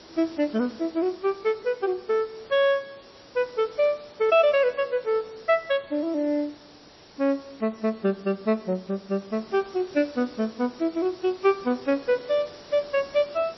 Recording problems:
lossy codec; MP3, log-spectral distance 13 dB
hiss; SNR 21 dB

